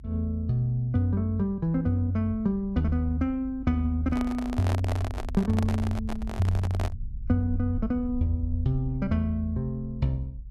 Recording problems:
low-frequency rumble; below 68 Hz, SNR 12 dB
handling noise; from 4 to 7 s; peak -2 dB vs average level

